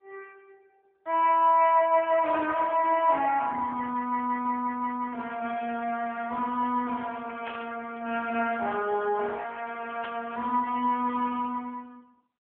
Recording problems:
phone line; 260 Hz to 3.2 kHz, AMR-NB
static burst; at 7.5 s and at 10 s; peak -9 dB vs average level

